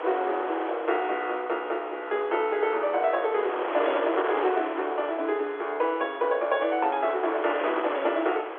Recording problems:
phone line; 300 Hz to 3.6 kHz, G.711
wind noise; below 1.3 kHz, SNR 7 dB

